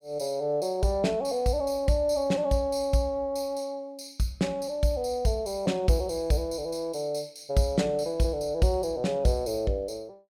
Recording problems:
none

